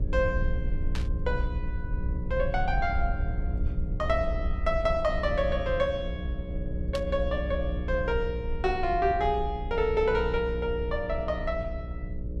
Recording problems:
hum; 60 Hz, harmonics up to 600 Hz, SNR 7 dB
low-frequency rumble; below 70 Hz, SNR 6 dB
static burst; at 1 s and at 7 s; peak -4 dB vs average level

